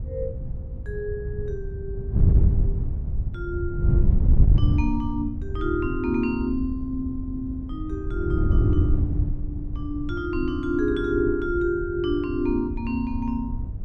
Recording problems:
wind on the microphone; below 100 Hz, SNR -1 dB

